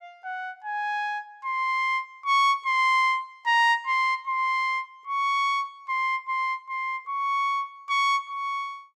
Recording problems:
none

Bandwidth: 15 kHz